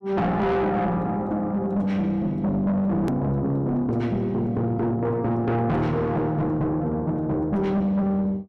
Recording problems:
distortion; soft clipping, signal-to-distortion ratio 7 dB
edit click; at 3 s

